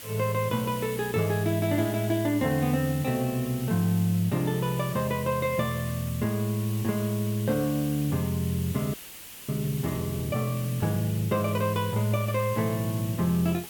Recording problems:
hiss; SNR 13 dB
frozen audio; at 9 s for 0.5 s

